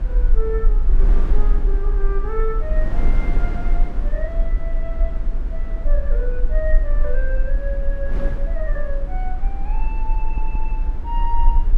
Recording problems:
low-frequency rumble; below 38 Hz, strongest tone 24 Hz, SNR -8 dB
wind noise; below 380 Hz, SNR 3 dB
stutter; at 10 s

